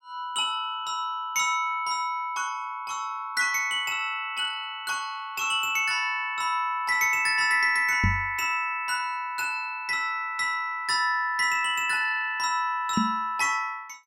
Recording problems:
knock on the microphone; at 8 s and at 13 s; peak +3 dB vs average level

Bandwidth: 17 kHz